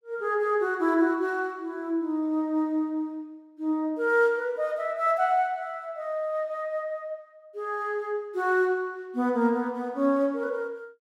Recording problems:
none

